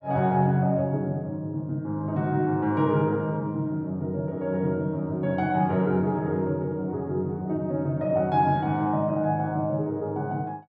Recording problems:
none

